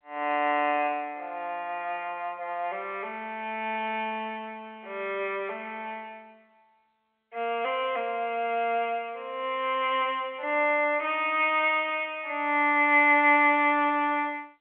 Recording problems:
telephone audio; 340 Hz to 3.4 kHz, G.711

